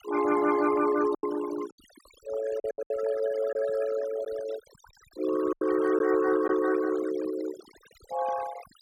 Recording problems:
denoising artefacts; signal-to-artefact ratio 13 dB
packet loss; 6% of the sound replaced, filled with silence

